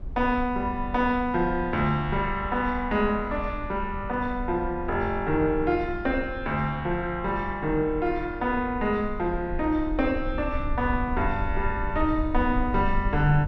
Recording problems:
low-frequency rumble; below 68 Hz, SNR 10 dB

